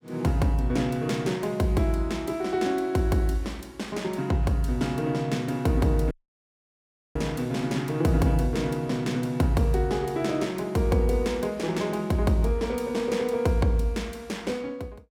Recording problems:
dropout; at 6 s for 1 s

